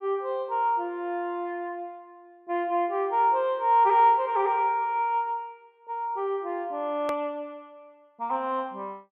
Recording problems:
click at an edit; at 7 s

